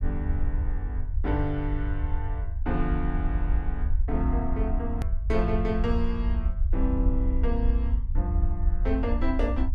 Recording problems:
low-frequency rumble; below 66 Hz, SNR -3 dB
hard cut with a click; at 5 s

